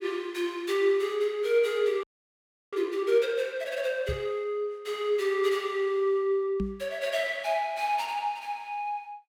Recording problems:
frozen audio; at 2 s for 0.5 s
microphone thump; at 4 s and at 6.5 s; peak 0 dB vs average level

